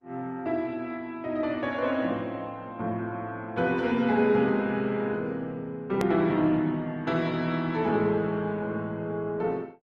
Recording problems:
codec artefacts; Opus, log-spectral distance 2 dB, nothing above 13.1 kHz
hard cut with a click; at 6 s

